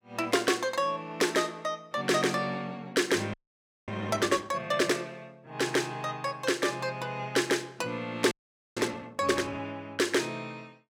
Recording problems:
frozen audio; at 3.5 s for 0.5 s and at 8.5 s

